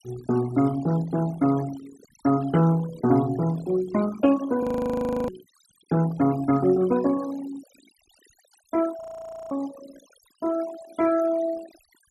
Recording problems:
noise reduction artefacts; signal-to-artefact ratio 18 dB
audio freezing; at 4.5 s for 0.5 s and at 9 s for 0.5 s

